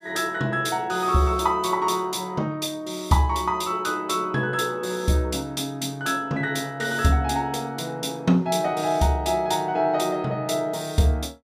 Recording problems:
none

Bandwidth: 15.5 kHz